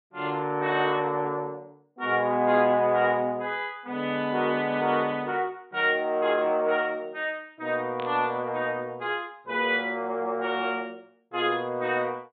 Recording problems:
treble cut off; nothing above 4 kHz
burst of static; at 8 s; peak -10 dB vs average level

